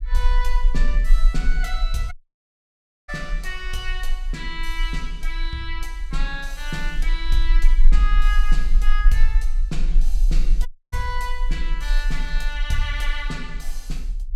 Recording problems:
rumble; below 36 Hz, strongest tone 22 Hz, SNR -6 dB
dropout; at 2 s for 1 s and at 11 s

